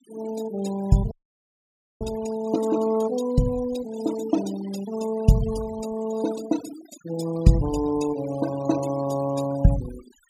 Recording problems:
noise reduction artefacts; signal-to-artefact ratio 15 dB
audio freezing; at 1 s for 1 s

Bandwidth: 15.5 kHz